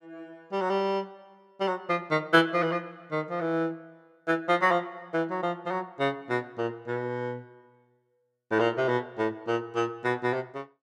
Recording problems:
none

